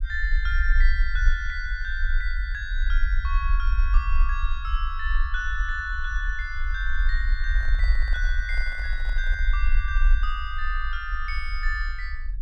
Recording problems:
rumble; below 46 Hz, SNR -3 dB
handling noise; from 7.5 to 9.5 s; peak -13 dB vs average level

